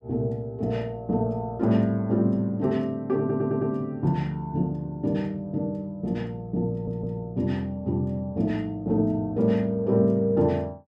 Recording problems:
stutter; at 3 s and at 6.5 s

